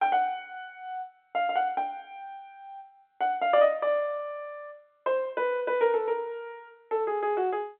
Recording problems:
phone line; 240 Hz to 3.5 kHz, G.711

